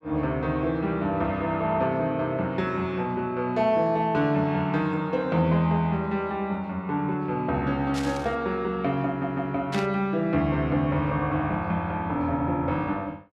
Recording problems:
static burst; at 8 s and at 9.5 s; peak -4 dB vs average level
stutter; at 9 s

